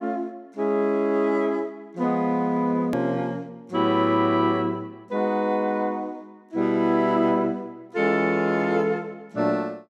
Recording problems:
click at an edit; at 3 s

